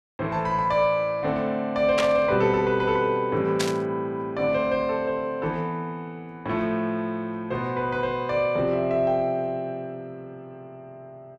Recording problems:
static burst; at 2 s and at 3.5 s; peak +2 dB vs average level

